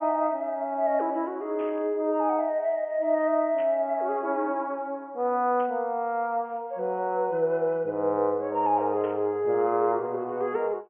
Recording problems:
treble cut off; nothing above 3.1 kHz
static burst; 4 times, first at 1.5 s; peak -16 dB vs average level

